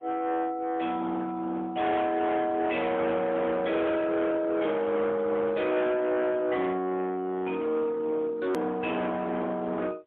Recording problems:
phone line; 990 Hz to 2 kHz, AMR-NB, then MP3
distorted audio; hard clipping, uneven, signal-to-distortion ratio 7 dB
edit click; at 8.5 s

